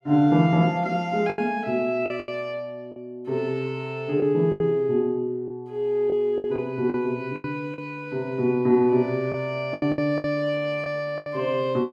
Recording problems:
lost packets; 8% of the sound replaced, filled with the last packet

